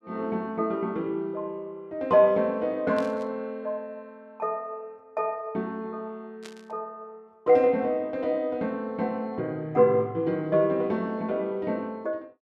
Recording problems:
burst of static; at 3 s and at 6.5 s; peak -11 dB vs average level

